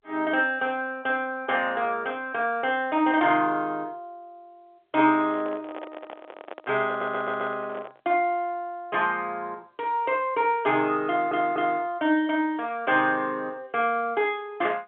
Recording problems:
phone line; 260 Hz to 3.5 kHz, G.711
handling noise; from 5 to 8 s; peak -8 dB vs average level
stutter; at 7 s and at 11 s

